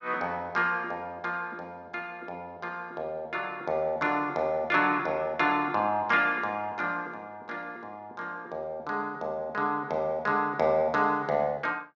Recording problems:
none

